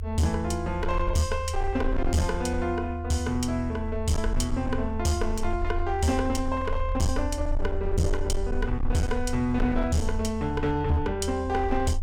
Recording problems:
distortion; hard clipping, signal-to-distortion ratio 11 dB
low-frequency rumble; below 80 Hz, SNR 5 dB

